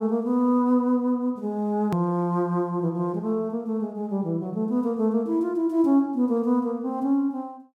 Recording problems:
edit click; at 2 s

